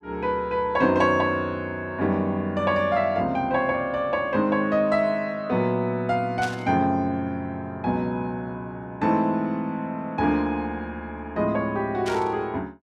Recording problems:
static burst; at 6.5 s and at 12 s; peak -6 dB vs average level

